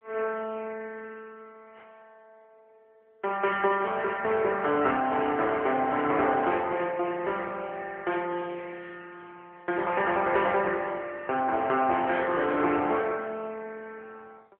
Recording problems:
phone line; 300 Hz to 3.3 kHz, AMR-NB

